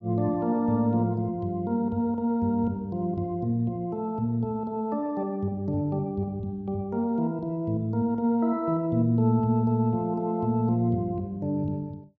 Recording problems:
none

